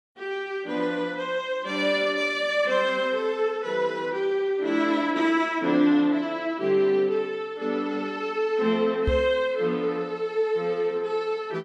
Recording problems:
microphone thump; at 9 s; peak +2 dB vs average level

